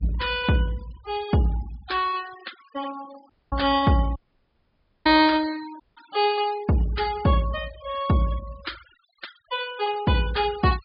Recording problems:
treble cut off; nothing above 5.5 kHz
noise reduction artefacts; signal-to-artefact ratio 19 dB
audio cutting out; at 3.5 s, at 4 s for 1 s and at 6 s

